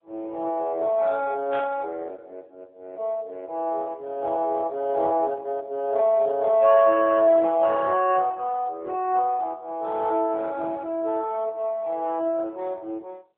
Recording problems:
telephone audio; 280 Hz to 2.8 kHz, AMR-NB
burst of static; at 1.5 s; peak -10 dB vs average level

